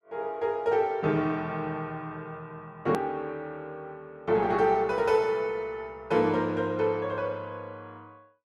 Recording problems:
hard cut with a click; at 3 s

